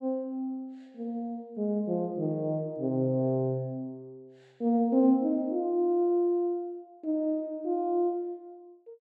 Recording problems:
none

